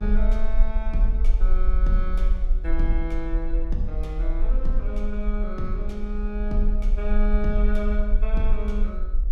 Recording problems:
hum; 60 Hz, harmonics up to 1.9 kHz, SNR 21 dB
rumble; below 40 Hz, strongest tone 20 Hz, SNR -6 dB

